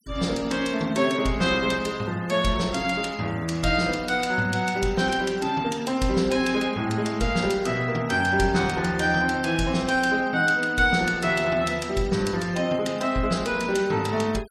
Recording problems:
noise reduction artefacts; signal-to-artefact ratio 22 dB

